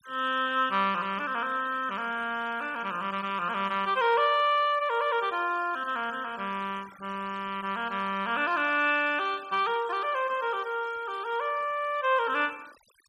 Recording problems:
denoising artefacts; signal-to-artefact ratio 22 dB

